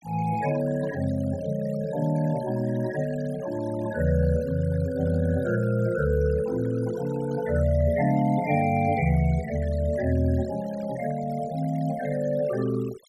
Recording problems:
noise reduction artefacts; signal-to-artefact ratio 18 dB

